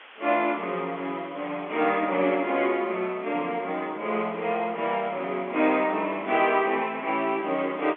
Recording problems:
phone line; 260 Hz to 3.4 kHz, G.711
hiss; SNR 22 dB

